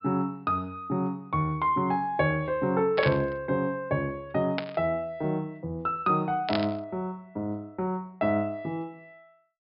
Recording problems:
low-pass filter; nothing above 5.5 kHz
static burst; at 3 s, at 4.5 s and at 6.5 s; peak +2 dB vs average level

